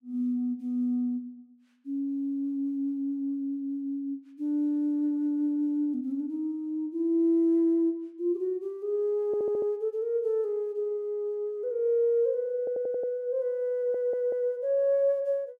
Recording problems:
stutter; at 9.5 s, at 13 s and at 14 s

